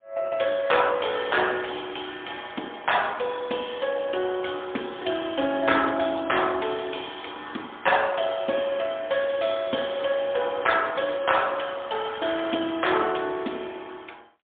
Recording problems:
phone line; 220 Hz to 3.6 kHz, AMR-NB, then MP3

